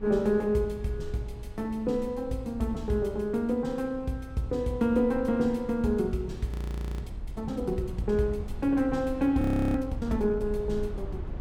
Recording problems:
low-frequency rumble; below 84 Hz, SNR 13 dB
frozen audio; at 6.5 s for 0.5 s and at 9.5 s

